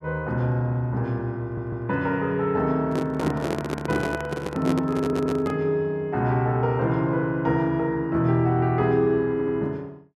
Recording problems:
audio stuttering; at 1.5 s, at 5 s and at 9.5 s
microphone handling noise; from 3 to 5.5 s; peak +1 dB vs average level

